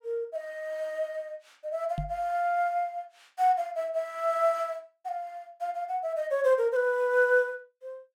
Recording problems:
microphone bump; at 2 s; peak -2 dB vs average level

